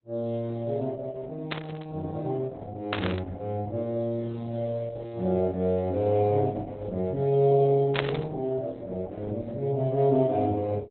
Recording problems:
lossy compression; Opus, log-spectral distance 2 dB, nothing above 3.9 kHz
static burst; at 1.5 s, at 3 s and at 8 s; peak +4 dB vs average level

